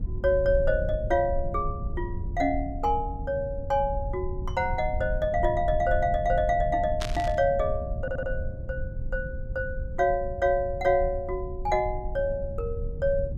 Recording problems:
low-frequency rumble; below 88 Hz, SNR 7 dB
burst of static; at 7 s; peak -2 dB vs average level
audio stuttering; at 8 s

